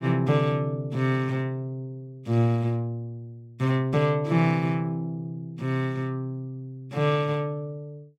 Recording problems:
none

